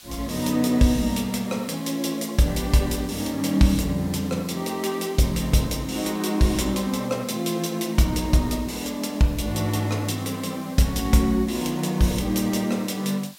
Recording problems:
hiss; slope +2 dB per octave, SNR 21 dB

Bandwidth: 16 kHz